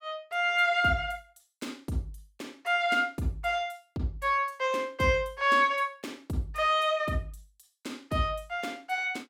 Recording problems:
none

